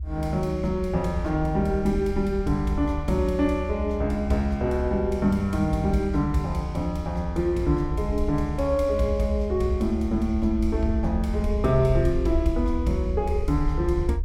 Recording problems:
rumble; below 72 Hz, SNR 6 dB

